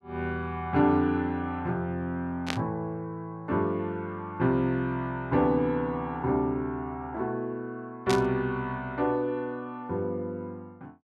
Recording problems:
static burst; at 2.5 s and at 8 s; peak +3 dB vs average level

